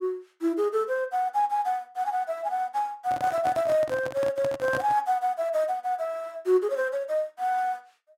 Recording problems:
microphone handling noise; from 3 to 5 s; peak -3 dB vs average level

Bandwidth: 16 kHz